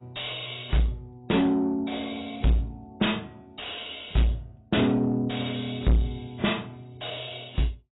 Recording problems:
lossy codec; AAC, log-spectral distance 9 dB, nothing above 3.8 kHz
distortion; soft clipping, signal-to-distortion ratio 6 dB

